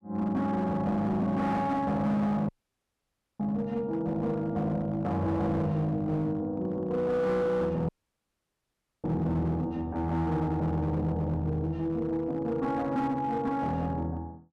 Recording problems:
distorted audio; hard clipping, signal-to-distortion ratio 12 dB
dropout; at 2.5 s for 1 s and at 8 s for 1 s

